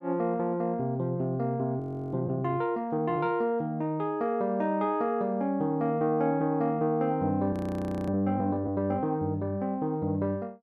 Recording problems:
frozen audio; at 2 s and at 7.5 s for 0.5 s

